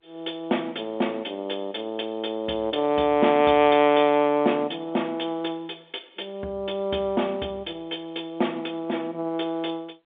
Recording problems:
phone line; 190 Hz to 3.6 kHz, G.711

